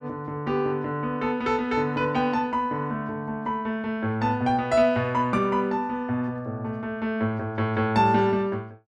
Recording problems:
none

